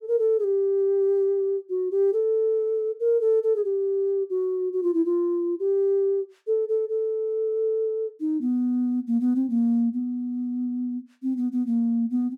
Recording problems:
none

